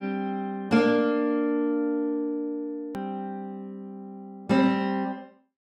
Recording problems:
click at an edit; at 3 s

